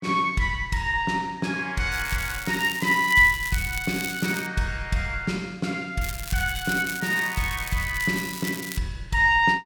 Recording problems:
crackle; from 2 to 4.5 s and from 6 to 9 s; loose cable, SNR 11 dB

